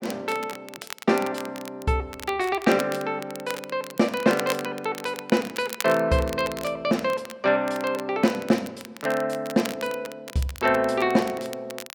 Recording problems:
crackling; vinyl, SNR 14 dB

